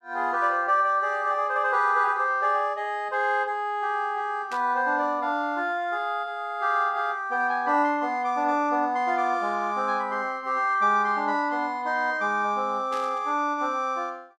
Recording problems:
burst of static; at 4.5 s and at 13 s; peak -12 dB vs average level

